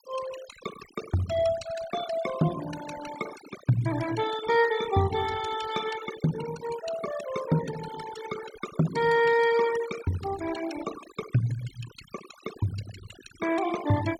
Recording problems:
noise reduction artefacts; signal-to-artefact ratio 11 dB

